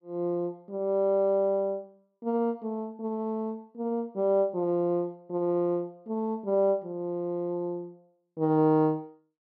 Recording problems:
none

